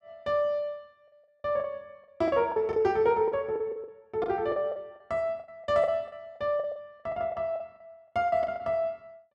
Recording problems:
packet loss; 14% of the sound replaced, filled with the last packet

